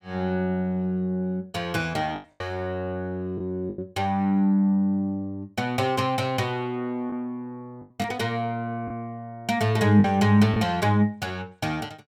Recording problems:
packet loss; 4% of the sound replaced, filled with the last packet

